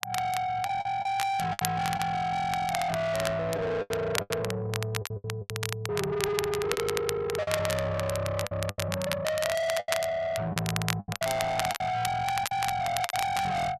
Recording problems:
distortion; soft clipping, signal-to-distortion ratio 7 dB
crackle; vinyl, SNR 6 dB
lost packets; 10% of the sound replaced, filled with the last packet

